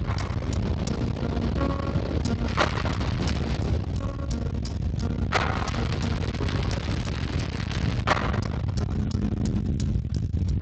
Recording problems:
codec artefacts; Speex, log-spectral distance 3 dB, nothing above 7.8 kHz
distortion; soft clipping, signal-to-distortion ratio 8 dB
low-frequency rumble; below 210 Hz, SNR -1 dB
wind noise; below 470 Hz, SNR 2 dB
crackle; from 2.5 to 3.5 s and from 5.5 to 8 s; loose cable, SNR 9 dB

